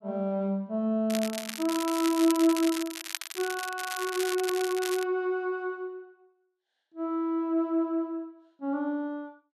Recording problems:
crackling; from 1 to 5 s; loose cable, SNR 8 dB

